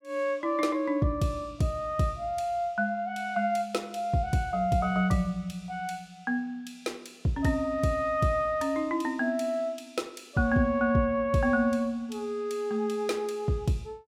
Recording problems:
none

